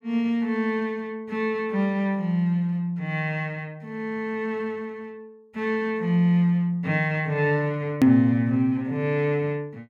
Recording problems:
click at an edit; at 8 s

